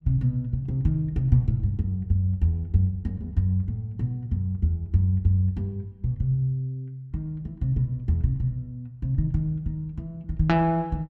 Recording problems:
none

